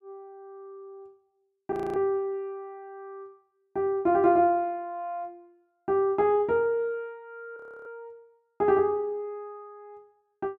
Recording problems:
frozen audio; at 1.5 s and at 7.5 s

